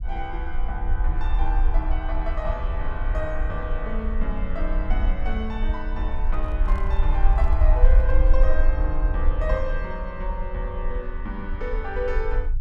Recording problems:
rumble; below 48 Hz, SNR -5 dB
handling noise; from 6 to 8.5 s; peak -9 dB vs average level

